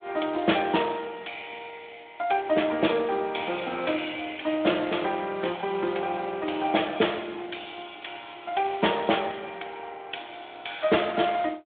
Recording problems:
telephone audio; 240 Hz to 3.7 kHz, Speex

